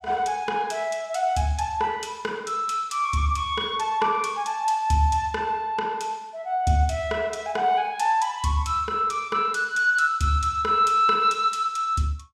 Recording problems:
none

